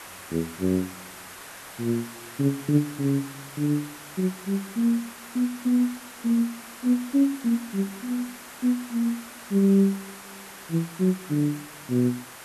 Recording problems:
background hiss; SNR 15 dB

